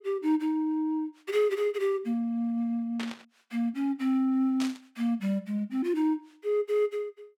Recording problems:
static burst; at 3 s and at 4.5 s; peak -4 dB vs average level

